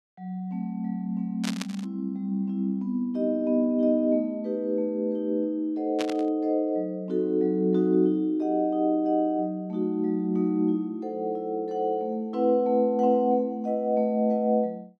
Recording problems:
burst of static; at 1.5 s and at 6 s; peak -3 dB vs average level

